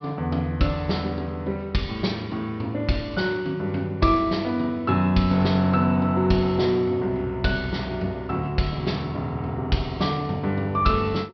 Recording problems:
low-pass filter; nothing above 5.5 kHz

